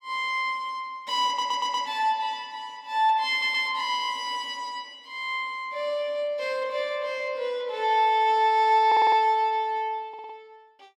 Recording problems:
audio stuttering; 4 times, first at 1.5 s

